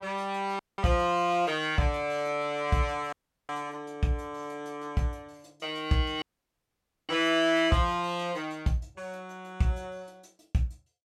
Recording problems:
audio cutting out; at 0.5 s, at 3 s and at 6 s for 1 s

